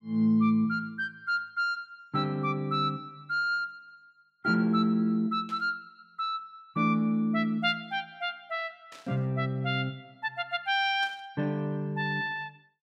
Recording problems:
static burst; at 5.5 s, at 9 s and at 11 s; peak -13 dB vs average level

